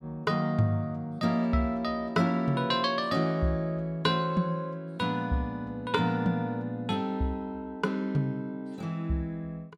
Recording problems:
none

